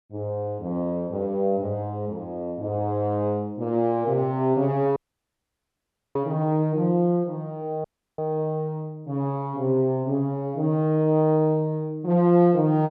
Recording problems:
audio cutting out; at 5 s for 1 s and at 8 s

